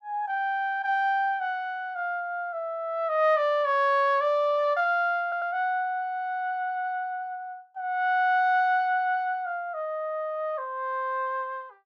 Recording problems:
audio stuttering; at 5 s

